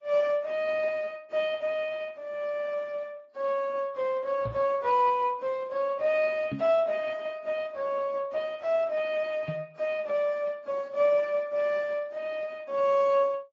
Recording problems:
lossy codec; Speex, then AAC, log-spectral distance 2 dB, nothing above 7.3 kHz
microphone thump; at 4.5 s, at 6.5 s and at 9.5 s; peak -1 dB vs average level

